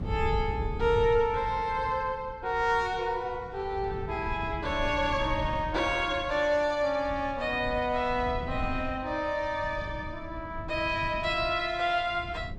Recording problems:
wind noise; below 130 Hz, SNR 11 dB

